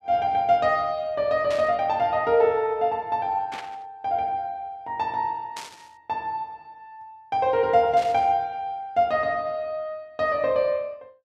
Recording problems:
static burst; 4 times, first at 1.5 s; peak -8 dB vs average level

